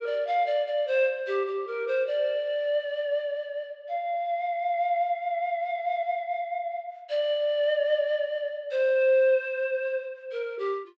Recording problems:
low-pass filter; nothing above 8 kHz

